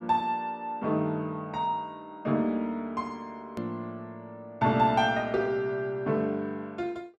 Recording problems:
edit click; at 3.5 s

